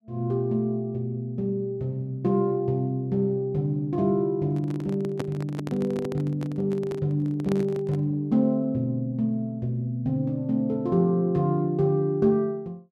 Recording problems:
microphone handling noise; from 4.5 to 8 s; peak -1 dB vs average level

